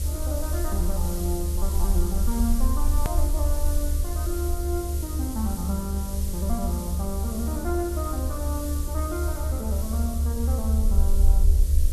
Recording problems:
electrical hum; 50 Hz, harmonics up to 600 Hz, SNR 6 dB
background hiss; SNR 5 dB
rumble; below 72 Hz, SNR -5 dB
edit click; at 3 s

